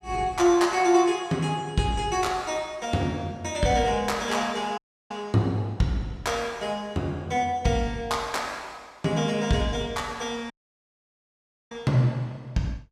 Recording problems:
audio cutting out; at 5 s and at 11 s for 1 s

